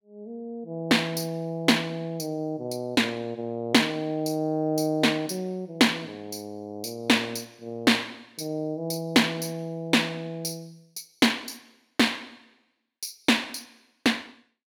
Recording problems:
none

